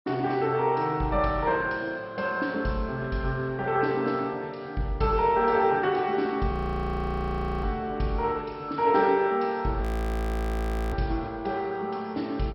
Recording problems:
codec artefacts; MP2, log-spectral distance 2 dB, nothing above 17.1 kHz
frozen audio; at 6.5 s for 1 s and at 10 s for 1 s

